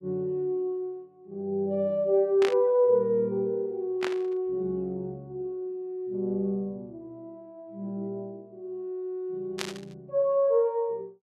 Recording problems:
burst of static; at 2.5 s, at 4 s and at 9.5 s; peak 0 dB vs average level

